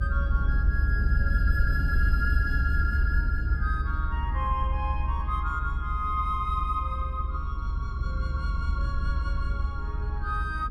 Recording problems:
low-frequency rumble; below 70 Hz, SNR -4 dB

